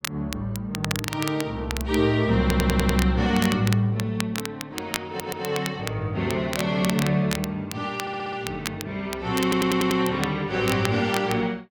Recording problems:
crackling; vinyl, SNR 9 dB
stutter; 4 times, first at 2.5 s

